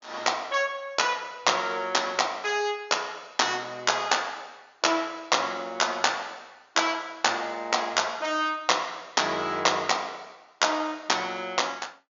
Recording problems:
treble missing; nothing above 7.1 kHz

